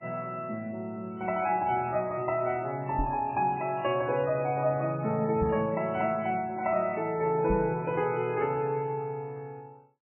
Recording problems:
codec artefacts; MP3, log-spectral distance 2 dB, nothing above 2.5 kHz
microphone thump; at 3 s, at 5.5 s and at 7.5 s; peak +2 dB vs average level

